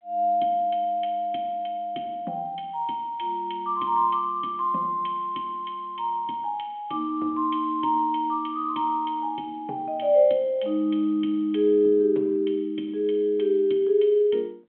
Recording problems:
telephone audio; 240 Hz to 3.5 kHz, G.726

